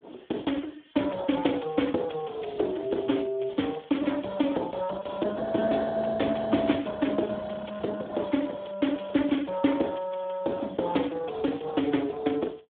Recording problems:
phone line; 240 Hz to 3.5 kHz, Speex

